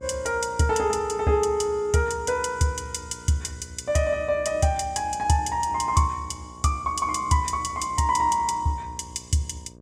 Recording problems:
electrical hum; 60 Hz, harmonics up to 1.1 kHz, SNR 22 dB

